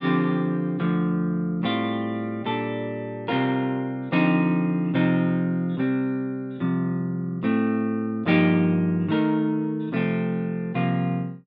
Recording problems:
none

